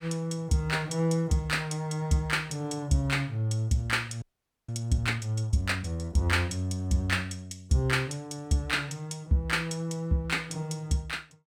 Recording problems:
frozen audio; at 4 s

